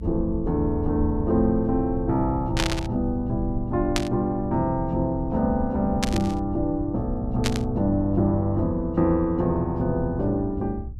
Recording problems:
rumble; below 96 Hz, SNR 10 dB
burst of static; 4 times, first at 2.5 s; peak +3 dB vs average level

